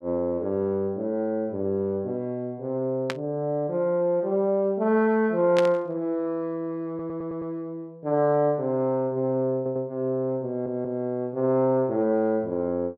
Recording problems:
static burst; at 3 s and at 5.5 s; peak -1 dB vs average level
audio stuttering; at 7 s, at 9.5 s and at 10 s

